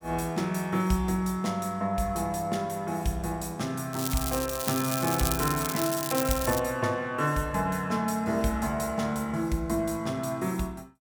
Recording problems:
crackling; from 4 to 6.5 s; loose cable, SNR 3 dB

